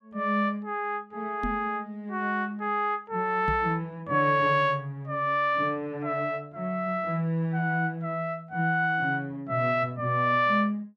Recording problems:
knock on the microphone; at 1.5 s and at 3.5 s; peak -2 dB vs average level

